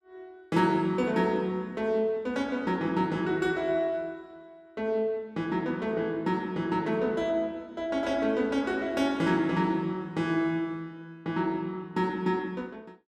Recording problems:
none

